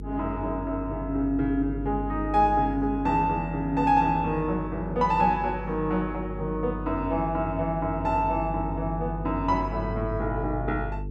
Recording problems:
hum; 50 Hz, harmonics up to 450 Hz, SNR 9 dB

